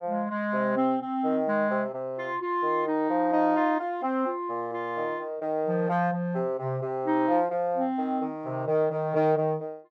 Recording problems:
none

